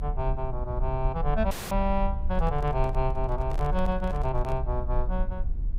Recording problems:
low-frequency rumble; below 58 Hz, SNR 2 dB
dropout; at 1.5 s
microphone handling noise; from 2.5 to 4.5 s; peak -7 dB vs average level

